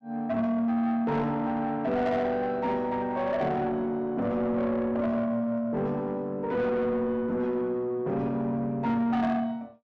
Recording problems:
distorted audio; soft clipping, signal-to-distortion ratio 12 dB

